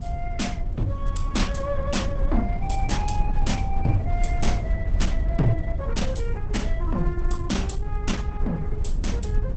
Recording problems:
lossy codec; Opus, log-spectral distance 2 dB, nothing above 8 kHz
rumble; below 68 Hz, SNR -1 dB

